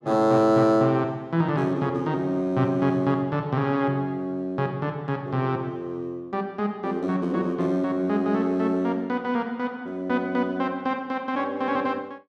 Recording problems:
none

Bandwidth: 12 kHz